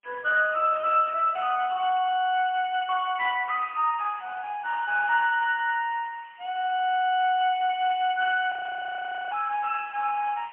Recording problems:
telephone audio; 300 Hz to 3.1 kHz, AMR-NB, then MP3
background hiss; SNR 27 dB
audio freezing; at 8.5 s for 1 s

